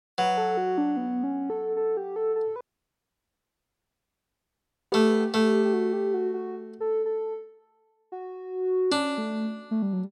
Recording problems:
dropout; at 2.5 s for 2.5 s

